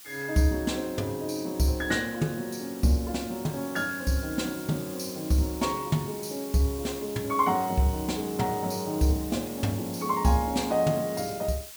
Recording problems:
hiss; slope +2 dB per octave, SNR 14 dB

